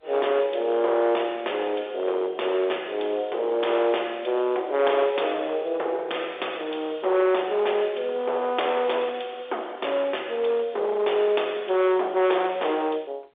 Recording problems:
telephone audio; 340 Hz to 3.6 kHz, G.711
distortion; hard clipping, signal-to-distortion ratio 11 dB

